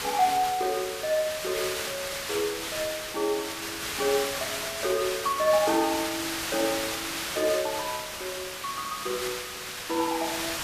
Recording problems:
hiss; slope 0 dB per octave, SNR 3 dB

